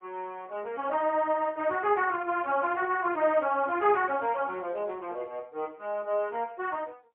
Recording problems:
telephone audio; 280 Hz to 3 kHz, AMR-NB, then MP3

